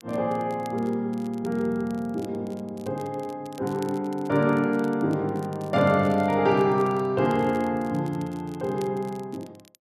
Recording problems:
crackling; vinyl, SNR 26 dB

